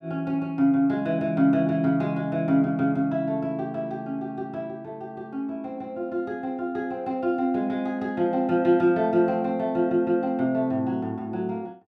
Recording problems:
none

